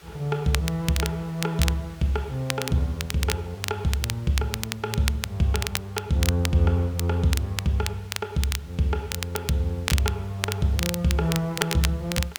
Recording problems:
background hiss; slope -2 dB per octave, SNR 24 dB
crackle; vinyl, SNR 6 dB

